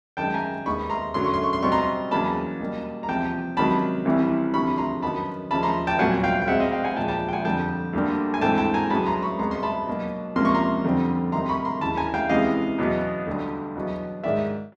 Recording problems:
none

